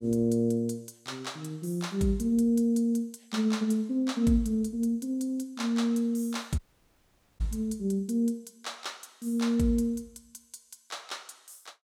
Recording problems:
dropout; at 6.5 s for 1 s

